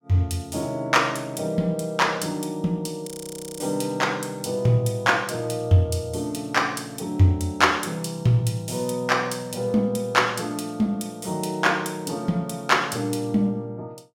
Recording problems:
audio freezing; at 3 s for 0.5 s

